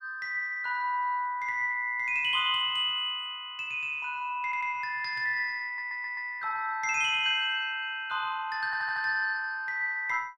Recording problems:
stutter; at 4.5 s, at 5.5 s and at 8.5 s

